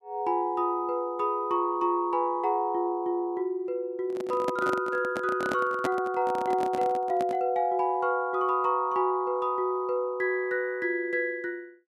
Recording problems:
handling noise; from 4 to 7.5 s; peak +1 dB vs average level

